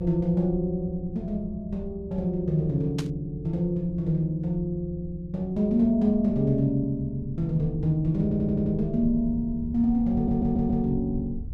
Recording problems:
rumble; below 92 Hz, SNR 13 dB
burst of static; at 3 s; peak -6 dB vs average level
audio stuttering; at 8 s and at 10 s

